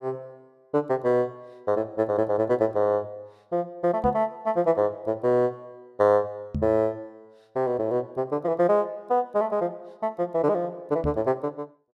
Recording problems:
microphone thump; at 4 s, at 6.5 s and at 11 s; peak 0 dB vs average level

